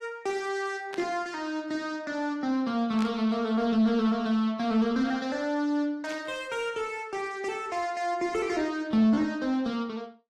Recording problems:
codec artefacts; AAC, log-spectral distance 2 dB, nothing above 14.1 kHz
distorted audio; soft clipping, signal-to-distortion ratio 12 dB
static burst; at 1 s, at 3 s and at 6 s; peak -6 dB vs average level

